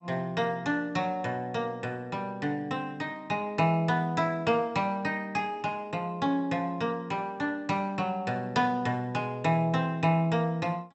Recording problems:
codec artefacts; MP2, log-spectral distance 2 dB, nothing above 7.8 kHz

